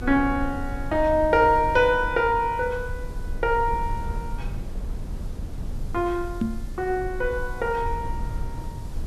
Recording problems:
background hiss; SNR 29 dB
rumble; below 84 Hz, strongest tone 22 Hz, SNR 11 dB
microphone thump; at 6.5 s; peak +2 dB vs average level

